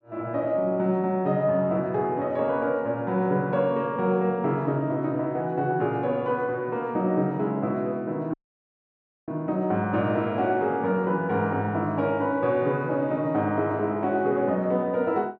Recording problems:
dropout; at 8.5 s for 1 s

